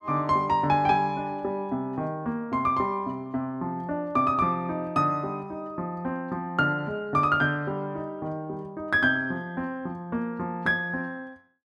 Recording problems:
none

